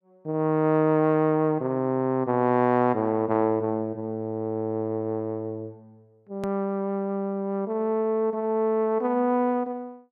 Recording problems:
click at an edit; at 6.5 s

